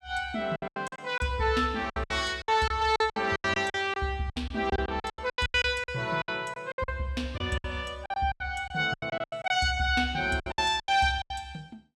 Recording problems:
packet loss; 18% of the sound replaced, filled with silence

